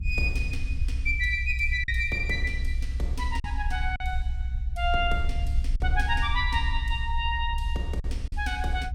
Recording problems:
rumble; below 64 Hz, SNR 2 dB
packet loss; 3% of the sound replaced, filled with silence

